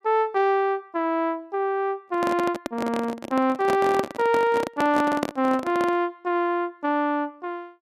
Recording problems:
handling noise; from 2 to 6 s; peak +2 dB vs average level

